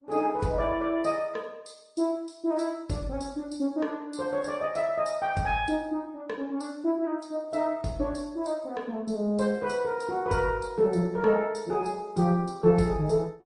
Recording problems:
lossy codec; Opus, then MP3, log-spectral distance 3 dB

